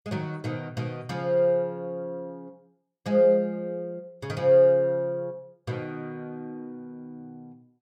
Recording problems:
none

